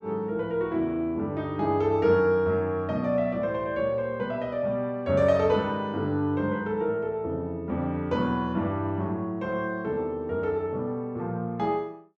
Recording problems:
none

